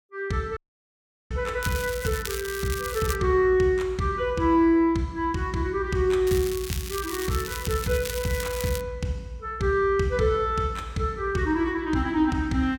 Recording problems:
dropout; at 0.5 s for 0.5 s
crackling; from 1.5 to 3 s and from 6.5 to 9 s; loose cable, SNR 10 dB

